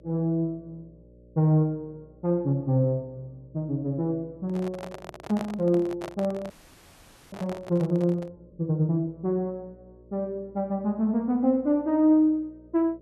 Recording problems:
electrical hum; 60 Hz, harmonics up to 600 Hz, SNR 28 dB
handling noise; from 4.5 to 8.5 s; peak -6 dB vs average level
frozen audio; at 6.5 s for 1 s

